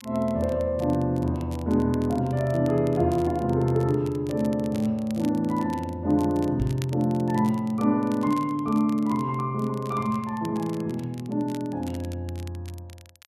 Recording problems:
crackling; vinyl, SNR 23 dB
microphone thump; at 6.5 s; peak 0 dB vs average level

